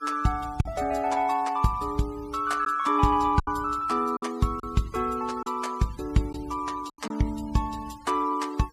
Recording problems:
denoising artefacts; signal-to-artefact ratio 22 dB
packet loss; 4% of the sound replaced, filled with silence

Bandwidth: 15 kHz